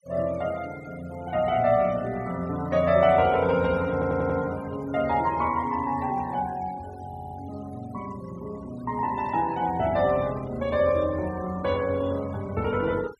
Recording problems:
denoising artefacts; signal-to-artefact ratio 21 dB
audio stuttering; at 4 s and at 7 s

